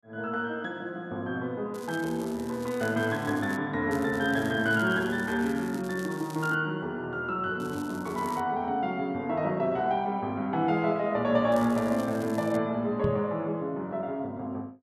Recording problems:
crackle; 4 times, first at 1.5 s; loose cable, SNR 20 dB
knock on the microphone; at 13 s; peak +2 dB vs average level

